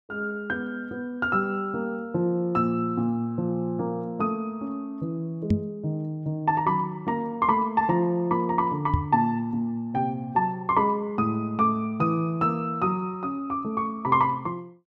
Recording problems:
microphone bump; at 5.5 s and at 9 s; peak +6 dB vs average level

